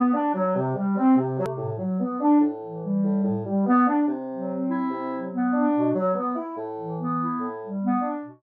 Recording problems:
edit click; at 1.5 s

